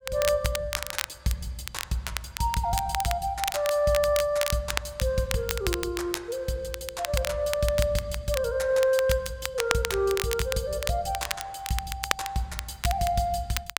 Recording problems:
crackling; vinyl, SNR 6 dB

